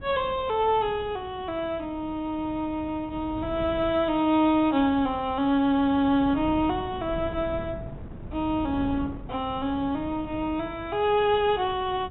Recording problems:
low-pass filter; nothing above 3.8 kHz
wind noise; below 240 Hz, SNR 15 dB

